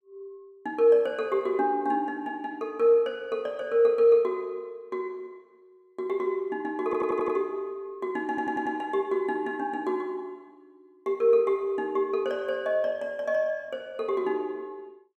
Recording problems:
audio stuttering; at 7 s and at 8.5 s

